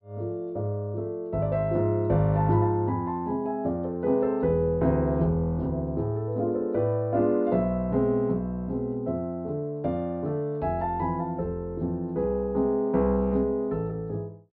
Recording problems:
treble cut off; nothing above 5.1 kHz

